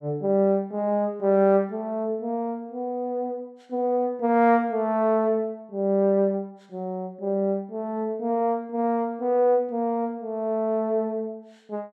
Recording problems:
none

